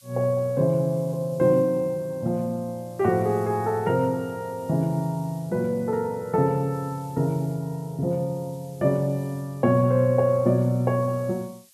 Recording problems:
background hiss; slope +5 dB per octave, SNR 27 dB

